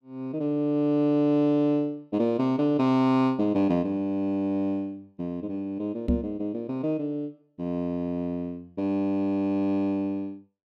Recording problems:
microphone thump; at 6 s; peak +6 dB vs average level

